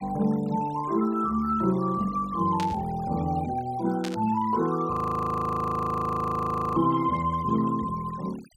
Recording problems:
noise reduction artefacts; signal-to-artefact ratio 21 dB
burst of static; at 2.5 s, at 4 s and at 7 s; peak -6 dB vs average level
frozen audio; at 5 s for 2 s

